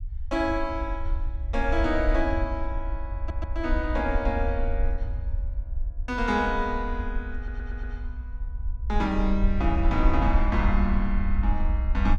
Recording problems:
rumble; below 60 Hz, SNR 2 dB
audio stuttering; at 3 s and at 7.5 s

